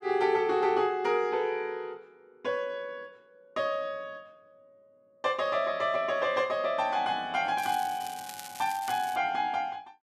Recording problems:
crackle; from 7.5 to 9 s; loose cable, SNR 14 dB

